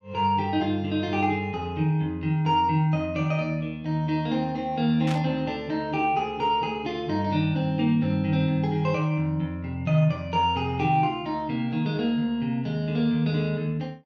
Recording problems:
static burst; at 5 s; peak -6 dB vs average level

